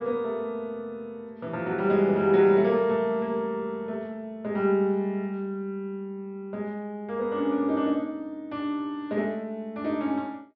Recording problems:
low-pass filter; nothing above 5.6 kHz

